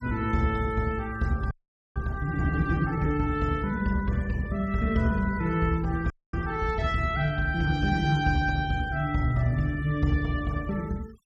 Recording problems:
noise reduction artefacts; signal-to-artefact ratio 24 dB
audio freezing; at 1.5 s and at 6 s

